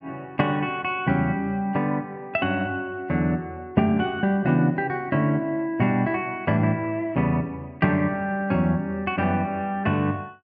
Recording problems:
none

